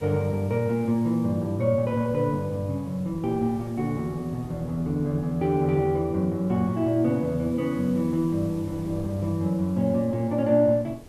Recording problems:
hiss; slope -1 dB per octave, SNR 29 dB
wind noise; below 450 Hz, SNR 22 dB

